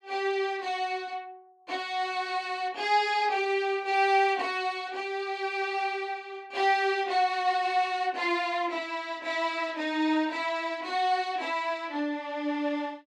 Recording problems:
none

